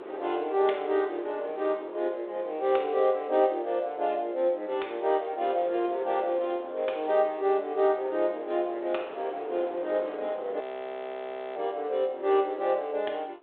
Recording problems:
telephone audio; 320 Hz to 3.9 kHz, G.726
wind noise; below 790 Hz, SNR 16 dB
frozen audio; at 11 s for 1 s

